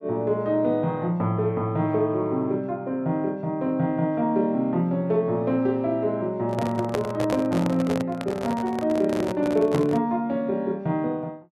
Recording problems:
handling noise; from 6.5 to 10 s; peak 0 dB vs average level

